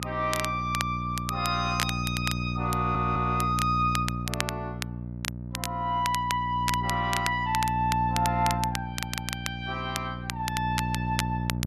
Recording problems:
electrical hum; 60 Hz, harmonics up to 600 Hz, SNR 4 dB
crackle; vinyl, SNR 7 dB
stutter; at 3 s and at 9 s

